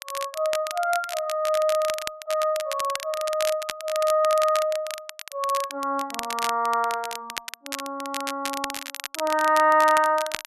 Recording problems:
crackling; vinyl, SNR 10 dB

